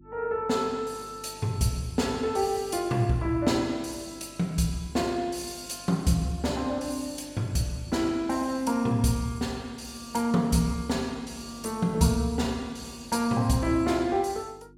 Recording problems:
hum; 50 Hz, harmonics up to 350 Hz, SNR 24 dB

